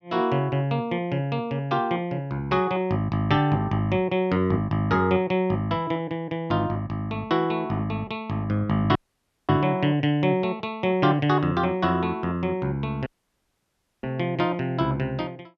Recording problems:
audio cutting out; at 9 s for 0.5 s and at 13 s for 1 s

